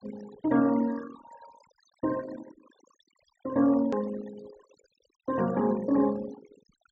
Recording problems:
low-pass filter; nothing above 8 kHz
noise reduction artefacts; signal-to-artefact ratio 17 dB
hard cut with a click; at 4 s

